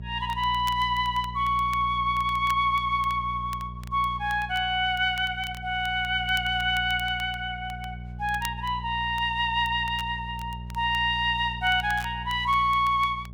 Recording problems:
hum; 60 Hz, harmonics up to 420 Hz, SNR 13 dB
crackle; vinyl, SNR 23 dB

